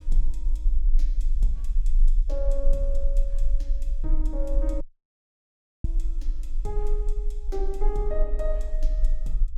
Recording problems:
low-frequency rumble; below 36 Hz, strongest tone 24 Hz, SNR -8 dB
dropout; at 5 s for 1 s

